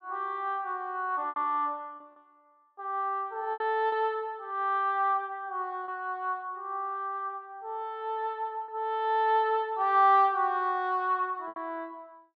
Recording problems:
packet loss; 3% of the sound replaced, filled with repeated pitch periods

